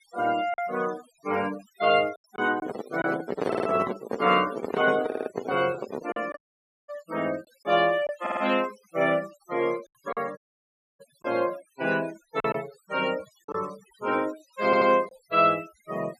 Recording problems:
noise reduction artefacts; signal-to-artefact ratio 17 dB
lost packets; 4% of the sound replaced, filled with silence
microphone handling noise; from 2.5 to 6 s; peak +3 dB vs average level
stutter; 4 times, first at 3.5 s
audio cutting out; at 6.5 s for 0.5 s and at 10 s for 0.5 s

